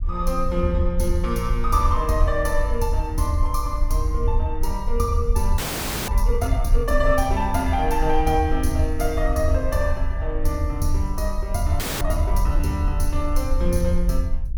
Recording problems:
rumble; below 52 Hz, SNR 2 dB
audio freezing; at 5.5 s for 0.5 s and at 12 s

